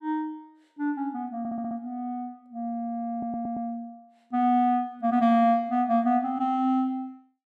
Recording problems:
audio stuttering; at 1.5 s and at 3 s

